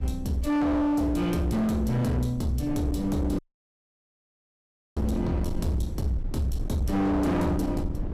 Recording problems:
distortion; hard clipping, uneven, signal-to-distortion ratio 7 dB
rumble; below 90 Hz, SNR 11 dB
wind noise; below 380 Hz, SNR 17 dB
dropout; at 3.5 s for 1.5 s

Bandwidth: 15.5 kHz